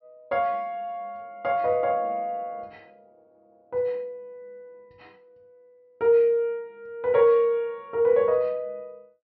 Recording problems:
low-pass filter; nothing above 5.5 kHz

